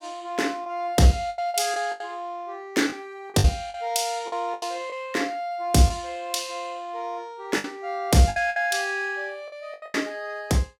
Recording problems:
packet loss; 9% of the sound replaced, filled with the last packet

